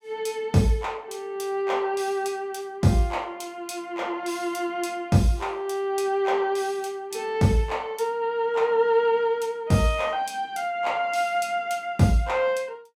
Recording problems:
none

